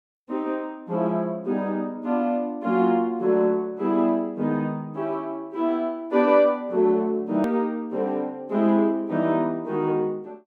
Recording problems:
click at an edit; at 7.5 s

